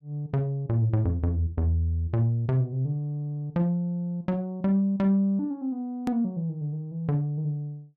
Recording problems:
edit click; at 6 s

